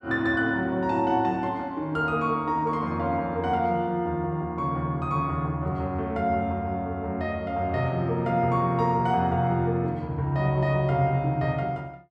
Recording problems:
none

